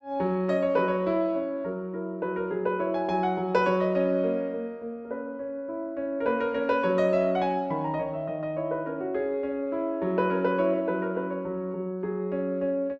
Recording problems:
none

